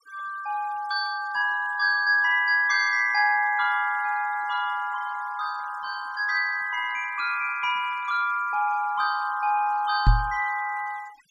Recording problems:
noise reduction artefacts; signal-to-artefact ratio 21 dB
microphone bump; at 10 s; peak +8 dB vs average level

